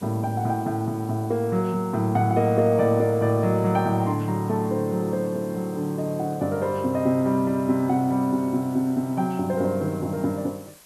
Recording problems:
background hiss; slope -1 dB per octave, SNR 25 dB

